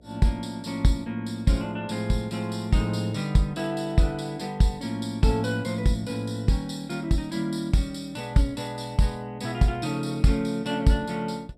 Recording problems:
electrical hum; 60 Hz, harmonics up to 720 Hz, SNR 30 dB

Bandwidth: 14.5 kHz